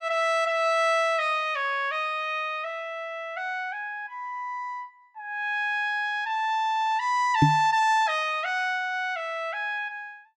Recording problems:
microphone bump; at 7.5 s; peak +9 dB vs average level

